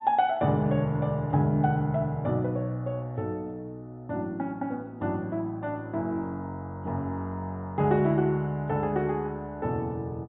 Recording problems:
treble cut off; nothing above 4 kHz

